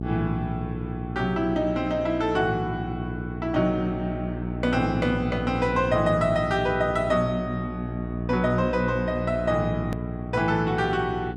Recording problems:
hum; 60 Hz, harmonics up to 780 Hz, SNR 6 dB
hard cut with a click; at 10 s

